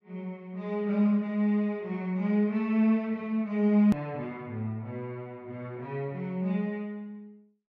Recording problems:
edit click; at 4 s

